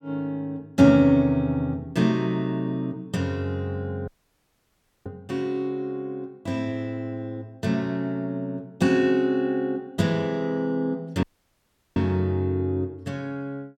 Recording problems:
audio cutting out; at 4 s for 1 s and at 11 s for 0.5 s

